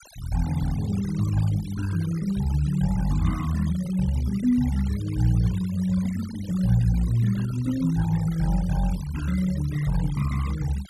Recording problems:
noise reduction artefacts; signal-to-artefact ratio 19 dB

